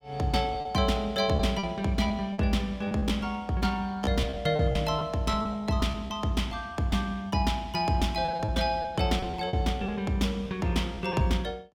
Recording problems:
lost packets; 9% of the sound replaced, filled with repeated pitch periods

